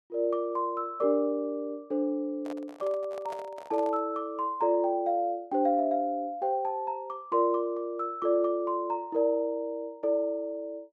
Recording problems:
handling noise; from 2.5 to 4 s; peak -8 dB vs average level

